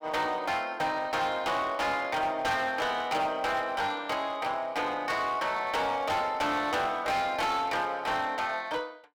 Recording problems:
distortion; hard clipping, uneven, signal-to-distortion ratio 10 dB

